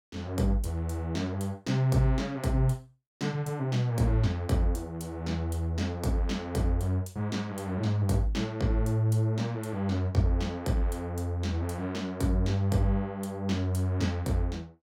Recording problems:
none

